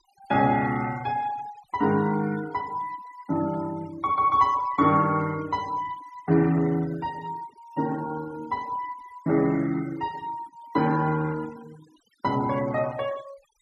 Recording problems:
noise reduction artefacts; signal-to-artefact ratio 20 dB

